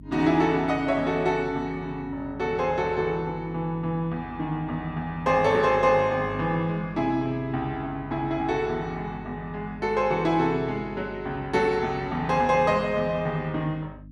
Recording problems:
electrical hum; 50 Hz, harmonics up to 300 Hz, SNR 18 dB

